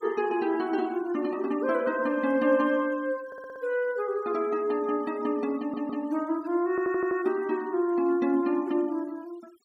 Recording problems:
noise reduction artefacts; signal-to-artefact ratio 25 dB
audio stuttering; at 3.5 s, at 5.5 s and at 6.5 s

